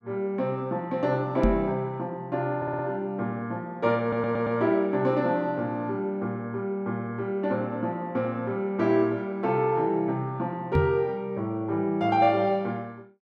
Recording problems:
knock on the microphone; at 1.5 s and at 11 s; peak +6 dB vs average level
audio stuttering; at 2.5 s and at 4 s

